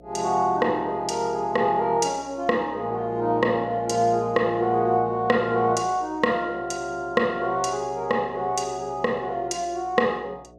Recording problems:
mains hum; 60 Hz, harmonics up to 720 Hz, SNR 25 dB

